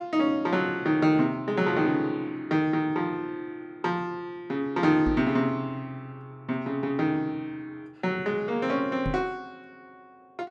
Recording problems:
microphone thump; at 5 s and at 9 s; peak -1 dB vs average level

